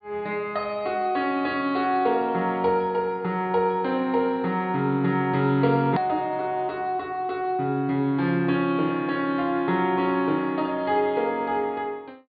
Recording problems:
treble missing; nothing above 4.8 kHz
click at an edit; at 6 s

